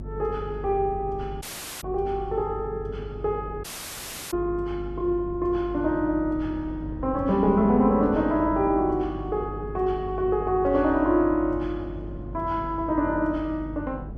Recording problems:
hum; 50 Hz, harmonics up to 350 Hz, SNR 13 dB
wind on the microphone; below 320 Hz, SNR 18 dB
audio cutting out; at 1.5 s and at 3.5 s for 0.5 s

